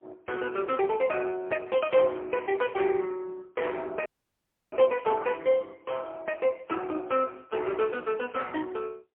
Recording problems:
telephone audio; 320 Hz to 3.5 kHz, AMR-NB, then MP3
dropout; at 4 s for 0.5 s

